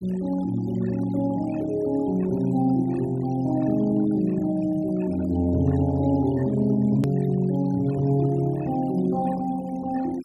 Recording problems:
denoising artefacts; signal-to-artefact ratio 22 dB
click at an edit; at 7 s

